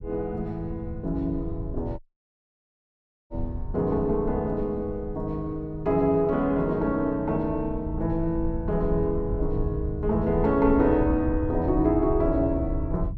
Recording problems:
rumble; below 92 Hz, SNR 9 dB
audio cutting out; at 2 s for 1.5 s

